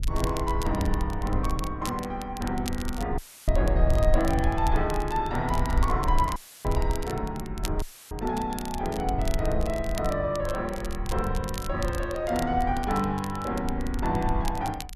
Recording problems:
wind on the microphone; below 68 Hz, SNR 3 dB
crackling; vinyl, SNR 14 dB
dropout; at 3 s, at 6.5 s and at 8 s; filled with static

